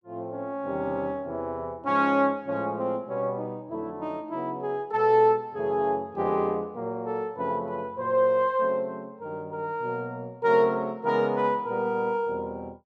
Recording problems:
none

